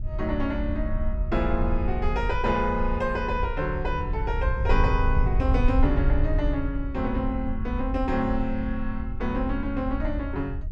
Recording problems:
wind noise; below 70 Hz, SNR 1 dB

